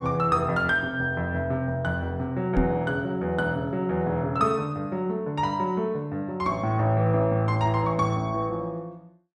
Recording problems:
knock on the microphone; at 2.5 s; peak +5 dB vs average level

